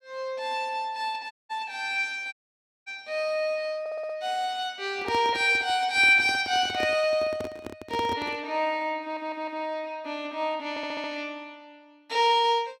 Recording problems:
audio cutting out; at 1.5 s and at 2.5 s for 0.5 s
audio stuttering; at 4 s, at 9 s and at 11 s
microphone handling noise; from 5 to 8.5 s; peak -4 dB vs average level

